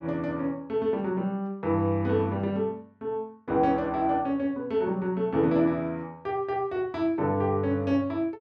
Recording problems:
none

